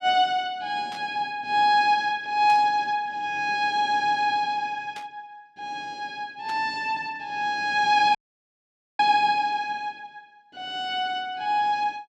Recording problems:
burst of static; 4 times, first at 1 s; peak -13 dB vs average level
dropout; at 8 s for 1 s

